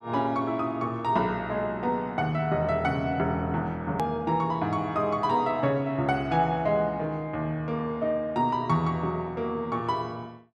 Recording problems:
hard cut with a click; at 4 s

